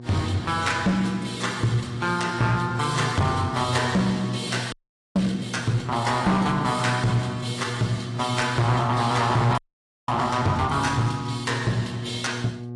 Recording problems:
lossy compression; AAC, log-spectral distance 4 dB, nothing above 10.4 kHz
distorted audio; hard clipping, uneven, signal-to-distortion ratio 10 dB
hum; 60 Hz, harmonics up to 840 Hz, SNR 12 dB
audio freezing; at 4.5 s and at 9.5 s for 0.5 s

